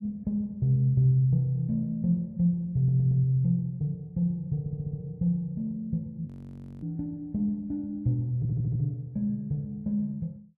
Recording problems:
audio stuttering; at 3 s, at 4.5 s and at 8.5 s
frozen audio; at 6.5 s for 0.5 s

